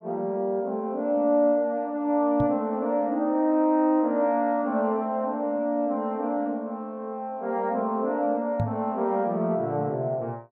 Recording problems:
knock on the microphone; at 2.5 s and at 8.5 s; peak +2 dB vs average level

